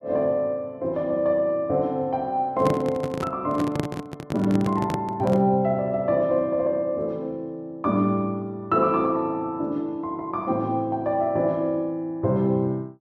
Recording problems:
microphone handling noise; from 2.5 to 5.5 s; peak +2 dB vs average level

